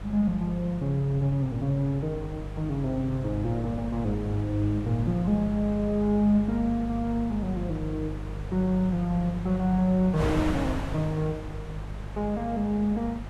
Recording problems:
electrical hum; 50 Hz, harmonics up to 400 Hz, SNR 10 dB
wind on the microphone; below 740 Hz, SNR 12 dB

